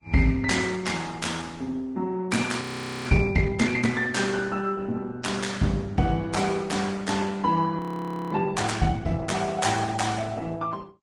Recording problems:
lossy compression; Opus, then Vorbis, log-spectral distance 4 dB, nothing above 20.1 kHz
frozen audio; at 2.5 s and at 8 s for 0.5 s

